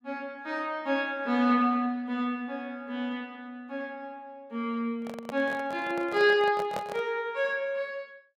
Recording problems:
microphone handling noise; from 5 to 7 s; peak -1 dB vs average level

